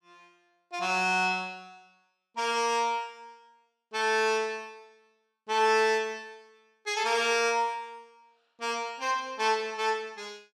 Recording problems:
none

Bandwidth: 14 kHz